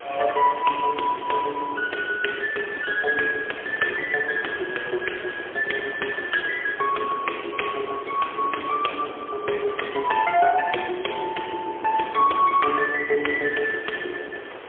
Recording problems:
phone line; 300 Hz to 3.3 kHz, AMR-NB, then MP3
hiss; SNR 15 dB
wind noise; below 570 Hz, SNR 19 dB

